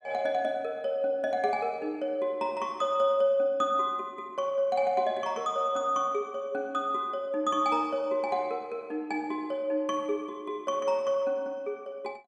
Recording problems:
none

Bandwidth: 14 kHz